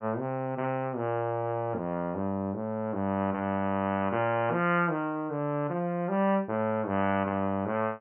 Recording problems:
low-pass filter; nothing above 3.1 kHz

